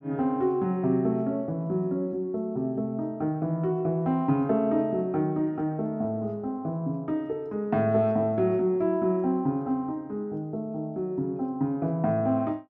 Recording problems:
none

